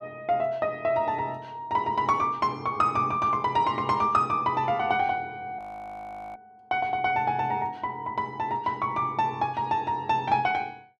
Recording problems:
frozen audio; at 5.5 s for 1 s

